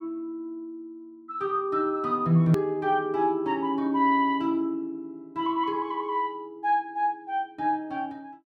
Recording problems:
hard cut with a click; at 2.5 s

